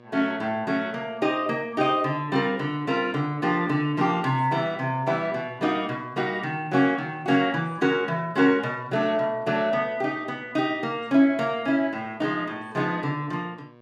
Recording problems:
hum; 60 Hz, harmonics up to 2.3 kHz, SNR 26 dB

